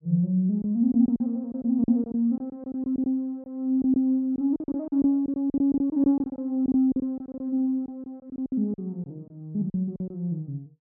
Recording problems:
packet loss; 13% of the sound replaced, filled with silence

